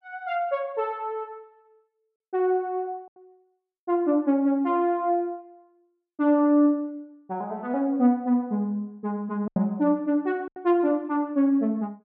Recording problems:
packet loss; 1.7% of the sound replaced, filled with silence

